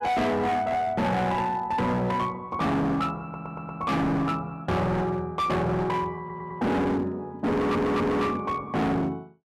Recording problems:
distorted audio; hard clipping, signal-to-distortion ratio 6 dB
audio stuttering; at 3 s, at 6 s and at 7.5 s

